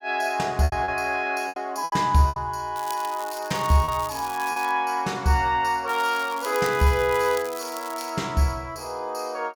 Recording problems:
lost packets; 5% of the sound replaced, filled with repeated pitch periods
crackle; from 3 to 4.5 s and from 6 to 8 s; loose cable, SNR 15 dB

